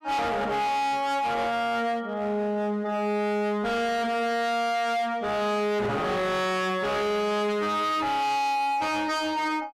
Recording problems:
distorted audio; hard clipping, signal-to-distortion ratio 7 dB

